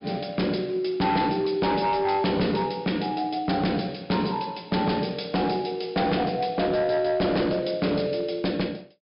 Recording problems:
treble cut off; nothing above 5.5 kHz
distortion; hard clipping, signal-to-distortion ratio 8 dB

